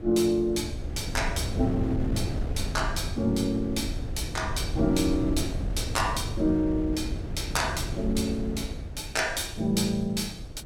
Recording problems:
wind on the microphone; below 150 Hz, SNR 5 dB

